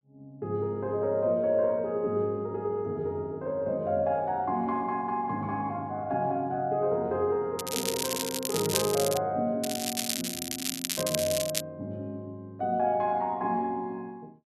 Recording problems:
crackling; from 7.5 to 9 s and from 9.5 to 12 s; loose cable, SNR 2 dB

